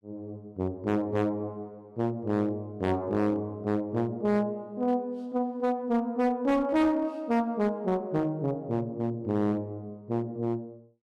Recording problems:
distortion; hard clipping, uneven, signal-to-distortion ratio 10 dB

